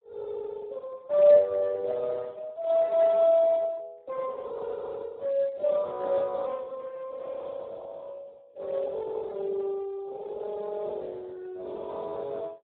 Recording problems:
phone line; 340 Hz to 2 kHz, Speex

